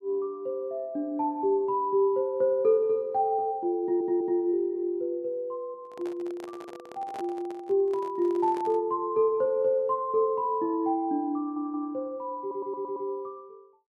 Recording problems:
stutter; at 4 s, at 11 s and at 12 s
handling noise; from 6 to 9 s; peak -9 dB vs average level

